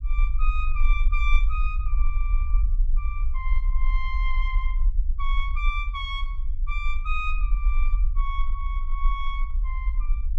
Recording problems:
low-frequency rumble; below 42 Hz, strongest tone 20 Hz, SNR -7 dB

